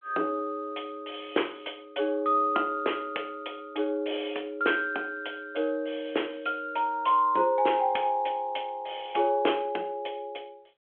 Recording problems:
telephone audio; 280 Hz to 3.4 kHz, G.726

